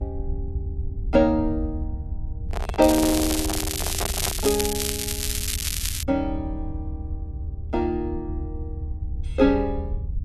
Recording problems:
rumble; below 80 Hz, SNR 8 dB
microphone handling noise; from 2.5 to 4.5 s; peak -1 dB vs average level
crackle; from 3 to 6 s; loose cable, SNR 2 dB

